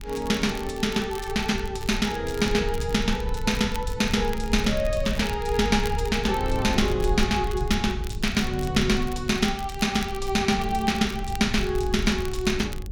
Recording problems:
rumble; below 80 Hz, SNR 8 dB
crackling; vinyl, SNR 18 dB

